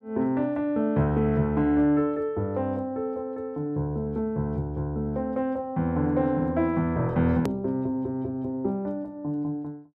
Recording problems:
edit click; at 7.5 s

